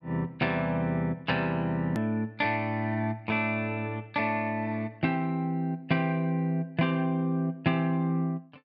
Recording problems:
click at an edit; at 2 s

